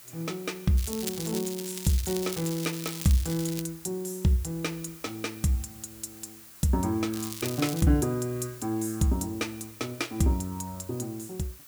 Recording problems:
hiss; slope 0 dB per octave, SNR 17 dB
crackle; from 1 to 3.5 s and at 7 s; loose cable, SNR 8 dB

